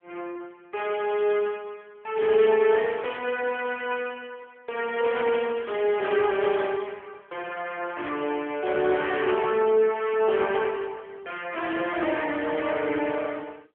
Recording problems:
phone line; 320 Hz to 3.3 kHz, AMR-NB

